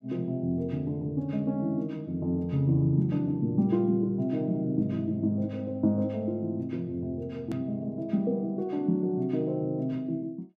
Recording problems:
click at an edit; at 7.5 s

